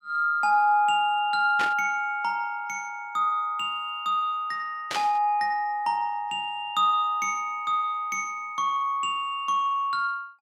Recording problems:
burst of static; at 1.5 s and at 5 s; peak -1 dB vs average level

